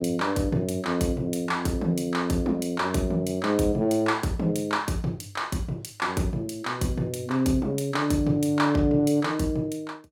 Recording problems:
none

